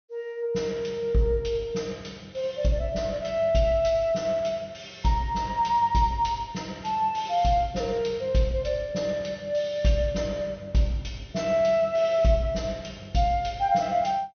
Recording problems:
treble cut off; nothing above 6.3 kHz

